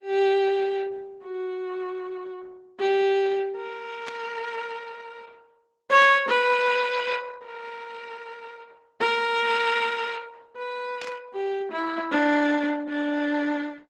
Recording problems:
lossy codec; Opus, log-spectral distance 4 dB
burst of static; at 4 s, at 6 s and at 11 s; peak -7 dB vs average level

